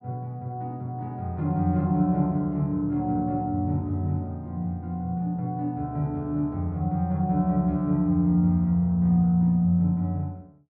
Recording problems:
treble cut off; nothing above 4.9 kHz

